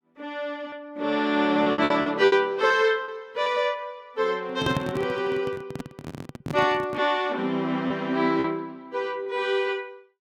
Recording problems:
lost packets; 5% of the sound replaced, filled with repeated pitch periods
microphone handling noise; from 4.5 to 7 s; peak +1 dB vs average level

